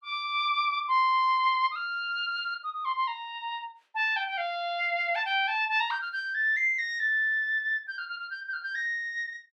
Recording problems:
none

